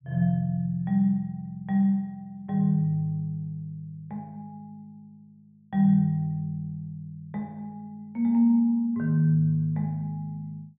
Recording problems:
treble cut off; nothing above 3.6 kHz

